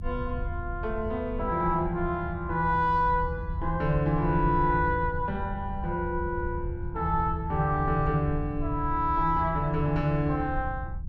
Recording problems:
rumble; below 90 Hz, SNR 8 dB

